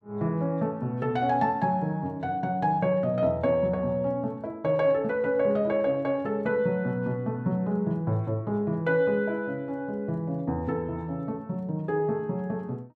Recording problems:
none

